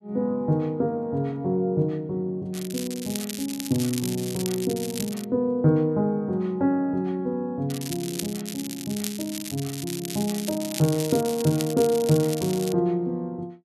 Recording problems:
crackle; from 2.5 to 5 s and from 7.5 to 13 s; loose cable, SNR 9 dB

